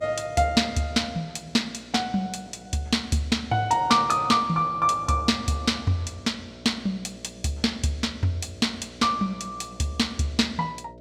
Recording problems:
hum; 60 Hz, harmonics up to 660 Hz, SNR 22 dB

